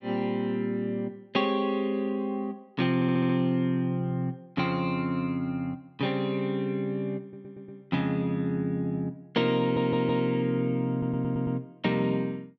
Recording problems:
stutter; 4 times, first at 3 s

